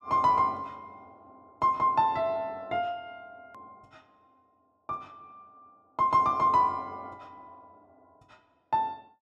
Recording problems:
edit click; at 3.5 s

